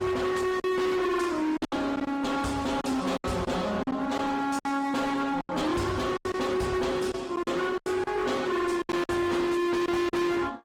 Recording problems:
lossy codec; Opus, log-spectral distance 3 dB, nothing above 17.1 kHz
distorted audio; hard clipping, signal-to-distortion ratio 6 dB
lost packets; 9% of the sound replaced, filled with silence

